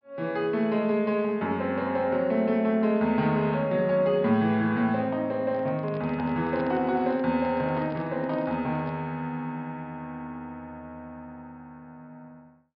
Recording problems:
treble cut off; nothing above 5.5 kHz
microphone handling noise; from 5.5 to 9 s; peak -9 dB vs average level

